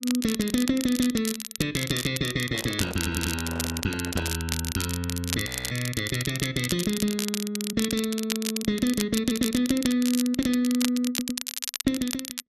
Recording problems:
crackle; vinyl, SNR 5 dB
handling noise; from 2.5 to 4.5 s; peak -3 dB vs average level
stutter; at 3 s, at 9 s and at 11 s
audio freezing; at 5.5 s

